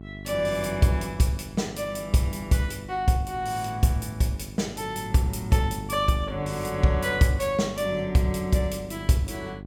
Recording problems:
mains hum; 50 Hz, harmonics up to 800 Hz, SNR 14 dB

